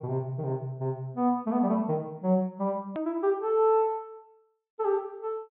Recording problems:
treble missing; nothing above 4 kHz
click at an edit; at 3 s

